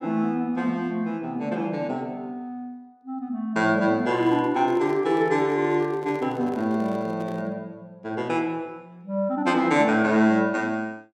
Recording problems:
microphone handling noise; from 4 to 7.5 s; peak -11 dB vs average level

